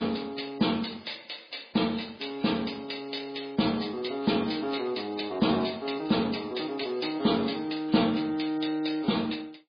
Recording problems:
lossy compression; MP3, log-spectral distance 9 dB, nothing above 4.8 kHz

